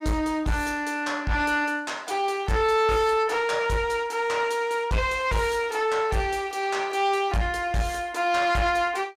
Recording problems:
distortion; soft clipping, signal-to-distortion ratio 11 dB

